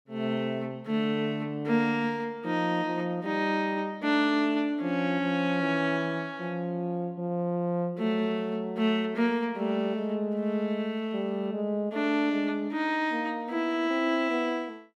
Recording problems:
none

